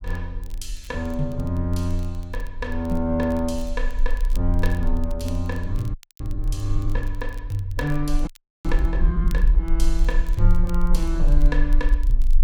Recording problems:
rumble; below 42 Hz, strongest tone 26 Hz, SNR -1 dB
crackle; vinyl, SNR 23 dB
frozen audio; at 6 s and at 8.5 s

